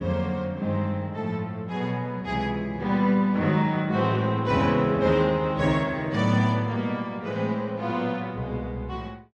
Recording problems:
none

